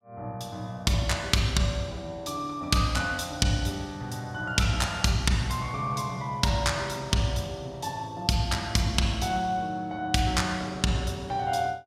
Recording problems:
none

